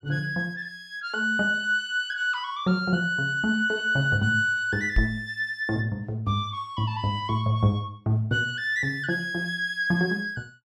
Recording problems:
knock on the microphone; at 5 s; peak +5 dB vs average level

